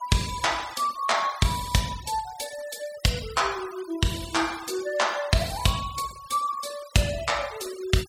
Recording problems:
noise reduction artefacts; signal-to-artefact ratio 15 dB

